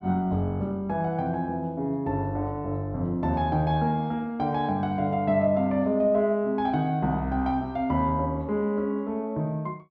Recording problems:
none

